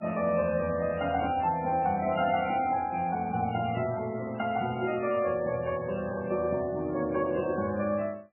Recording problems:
lossy codec; MP3, log-spectral distance 3 dB, nothing above 2.4 kHz

